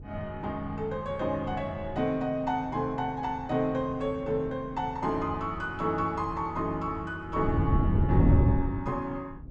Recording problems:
wind noise; below 180 Hz, SNR -2 dB

